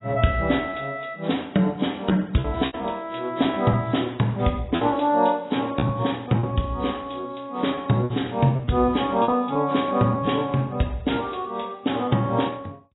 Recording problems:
codec artefacts; AAC, log-spectral distance 5 dB, nothing above 3.8 kHz
lost packets; 5% of the sound replaced, filled with repeated pitch periods

